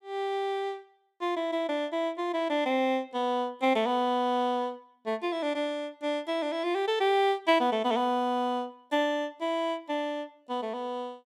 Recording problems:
none

